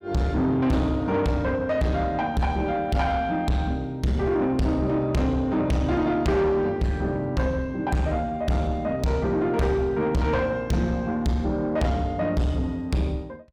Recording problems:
distorted audio; soft clipping, signal-to-distortion ratio 8 dB

